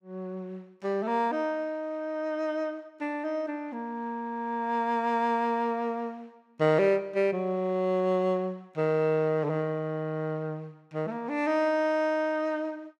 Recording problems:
none

